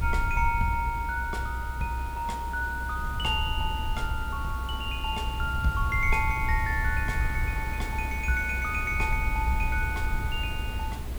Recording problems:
hiss; slope -5 dB per octave, SNR 12 dB
rumble; below 72 Hz, SNR 3 dB

